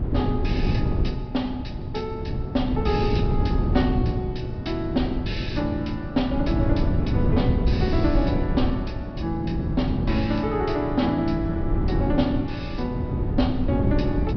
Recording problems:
treble cut off; nothing above 5.5 kHz
wind on the microphone; below 200 Hz, SNR 0 dB

